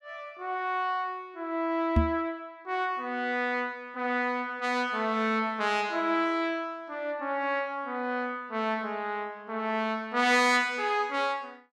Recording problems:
microphone thump; at 2 s; peak +8 dB vs average level

